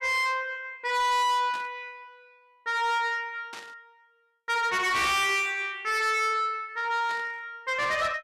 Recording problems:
distorted audio; soft clipping, signal-to-distortion ratio 7 dB
burst of static; at 1.5 s, at 3.5 s and at 7 s; peak -11 dB vs average level

